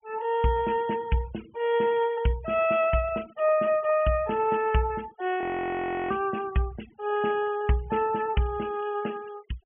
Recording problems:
treble missing; nothing above 3.1 kHz
noise reduction artefacts; signal-to-artefact ratio 21 dB
audio freezing; at 5.5 s for 0.5 s

